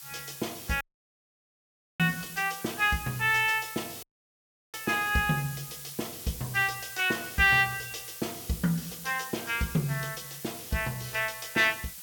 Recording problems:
background hiss; slope +4 dB per octave, SNR 12 dB
dropout; at 1 s for 1 s and at 4 s for 0.5 s

